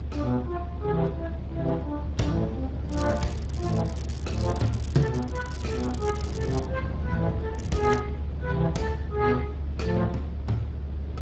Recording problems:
lossy compression; Speex, log-spectral distance 3 dB, nothing above 7.3 kHz
low-frequency rumble; below 150 Hz, strongest tone 72 Hz, SNR 4 dB
crackling; from 3 to 6.5 s and at 7.5 s; loose cable, SNR 17 dB

